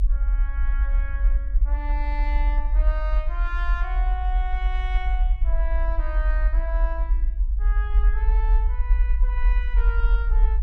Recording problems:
rumble; below 48 Hz, strongest tone 38 Hz, SNR -11 dB

